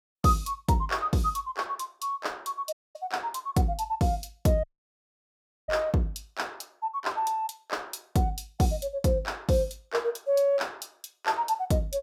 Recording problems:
audio cutting out; at 2.5 s and at 4.5 s for 1 s

